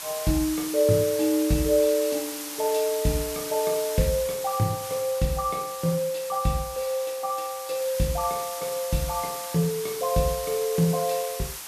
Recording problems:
hiss; SNR 8 dB

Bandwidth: 14 kHz